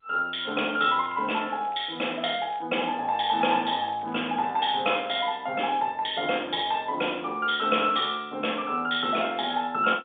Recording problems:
telephone audio; 260 Hz to 3.6 kHz, G.711
crackling; from 1 to 2.5 s and from 3 to 5 s; loose cable, SNR 28 dB

